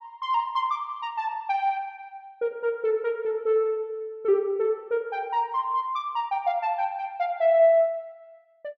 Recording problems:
none

